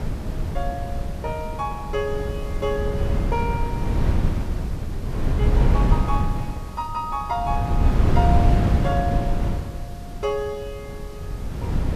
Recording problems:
hiss; slope 0 dB per octave, SNR 20 dB
wind noise; below 140 Hz, SNR -5 dB

